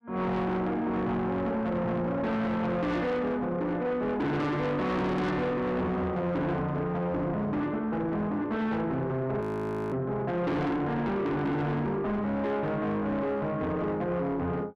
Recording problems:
distorted audio; soft clipping, signal-to-distortion ratio 7 dB
audio freezing; at 9.5 s for 0.5 s

